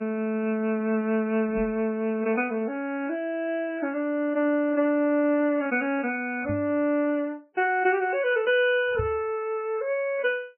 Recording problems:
codec artefacts; MP3, log-spectral distance 2 dB, nothing above 2.4 kHz
microphone thump; at 1.5 s, at 6.5 s and at 9 s; peak -2 dB vs average level

